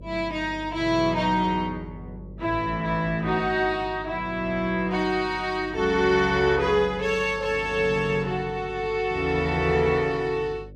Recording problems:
electrical hum; 50 Hz, harmonics up to 600 Hz, SNR 19 dB

